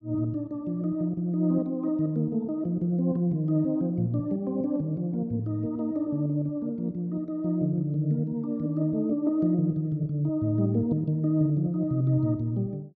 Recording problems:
none

